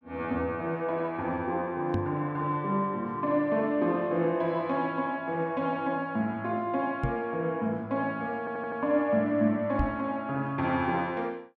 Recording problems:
knock on the microphone; at 2 s, at 7 s and at 10 s; peak +3 dB vs average level
stutter; at 8.5 s

